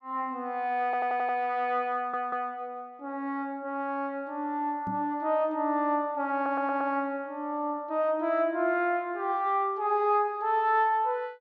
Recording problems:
audio stuttering; at 1 s, at 2 s and at 6.5 s
microphone bump; at 5 s; peak -3 dB vs average level

